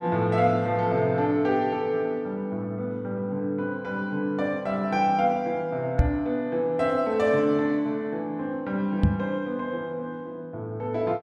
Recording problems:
knock on the microphone; at 6 s and at 9 s; peak +9 dB vs average level

